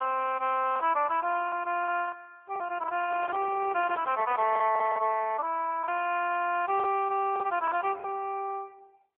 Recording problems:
telephone audio; 340 Hz to 3.3 kHz, AMR-NB
packet loss; 7% of the sound replaced, filled with the last packet
handling noise; from 3 to 5 s; peak -9 dB vs average level

